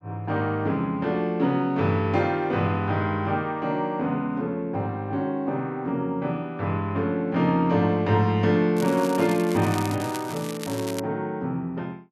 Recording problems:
crackle; from 9 to 11 s; loose cable, SNR 14 dB

